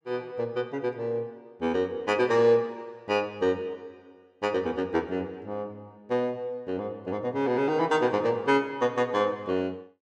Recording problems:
none

